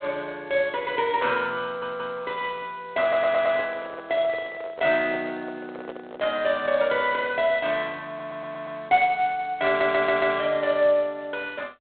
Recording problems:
telephone audio; 190 Hz to 4 kHz, G.726
stutter; 4 times, first at 1.5 s
microphone handling noise; from 3 to 6.5 s; peak -8 dB vs average level

